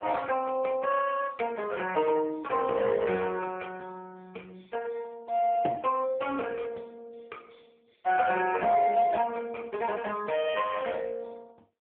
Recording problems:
phone line; 240 Hz to 3.3 kHz, AMR-NB

